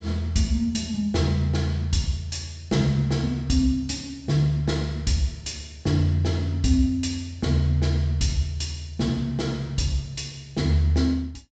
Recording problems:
treble cut off; nothing above 8 kHz

